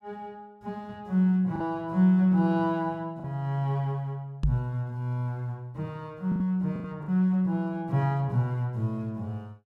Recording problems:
packet loss; 3% of the sound replaced, filled with the last packet
microphone bump; at 4.5 s; peak +5 dB vs average level

